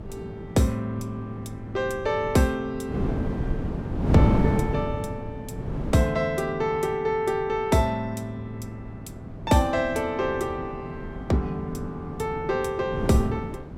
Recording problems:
wind on the microphone; below 280 Hz, SNR 5 dB

